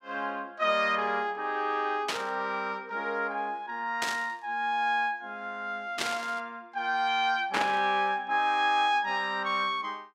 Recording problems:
burst of static; 4 times, first at 2 s; peak +3 dB vs average level

